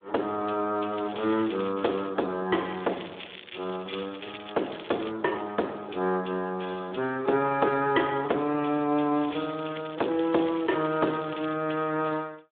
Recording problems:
telephone audio; 260 Hz to 3.9 kHz, Speex
crackling; from 1 to 2 s, from 2.5 to 5 s and from 9 to 12 s; loose cable, SNR 15 dB

